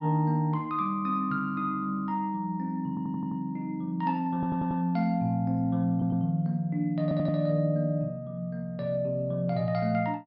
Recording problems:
low-pass filter; nothing above 5.5 kHz
stutter; 4 times, first at 3 s

